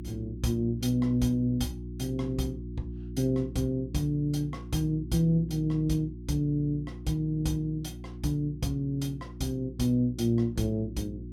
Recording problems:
hum; 60 Hz, harmonics up to 360 Hz, SNR 11 dB

